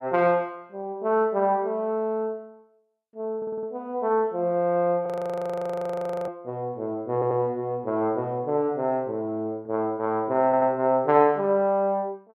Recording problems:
audio stuttering; at 3.5 s, at 7 s and at 10 s
frozen audio; at 5 s for 1 s

